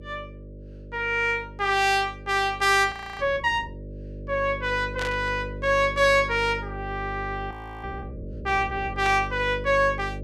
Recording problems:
hum; 50 Hz, harmonics up to 600 Hz, SNR 14 dB
audio freezing; at 3 s and at 7.5 s
static burst; at 5 s and at 9 s; peak -5 dB vs average level

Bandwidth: 15.5 kHz